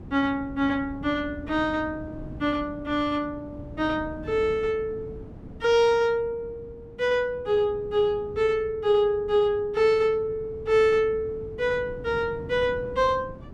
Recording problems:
wind noise; below 270 Hz, SNR 17 dB

